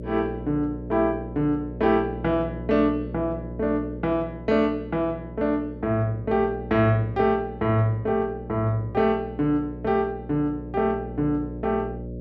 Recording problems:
hum; 60 Hz, harmonics up to 600 Hz, SNR 11 dB

